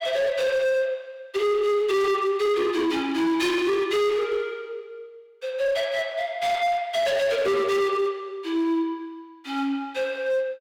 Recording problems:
distortion; hard clipping, uneven, signal-to-distortion ratio 7 dB

